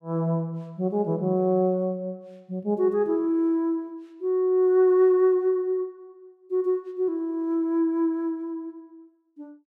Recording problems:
none

